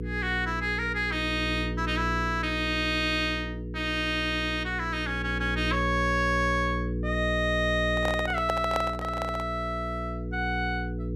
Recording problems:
hum; 60 Hz, harmonics up to 480 Hz, SNR 5 dB
handling noise; from 8 to 9.5 s; peak +1 dB vs average level

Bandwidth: 13.5 kHz